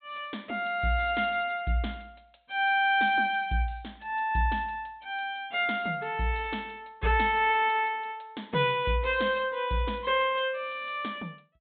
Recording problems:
treble cut off; nothing above 4 kHz

